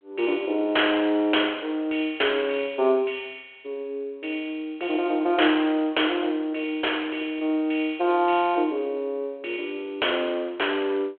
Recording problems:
phone line; 320 Hz to 3.3 kHz, G.726

